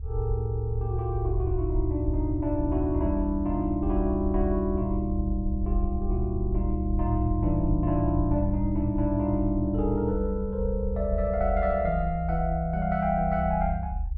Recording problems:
rumble; below 68 Hz, SNR 4 dB

